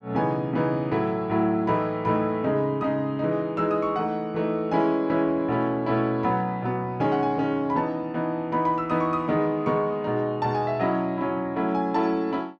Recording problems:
none

